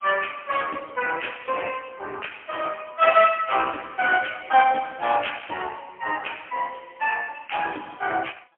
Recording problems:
phone line; 280 Hz to 3.1 kHz, AMR-NB, then MP3

